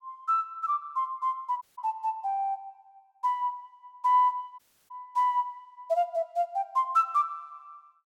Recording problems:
dropout; at 1.5 s and at 4.5 s

